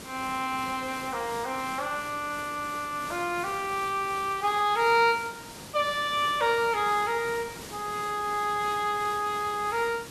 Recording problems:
hiss; slope -3 dB per octave, SNR 14 dB

